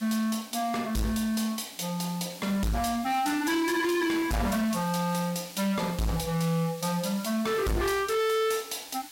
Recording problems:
distorted audio; hard clipping, signal-to-distortion ratio 6 dB
hiss; slope +3 dB per octave, SNR 16 dB

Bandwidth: 16 kHz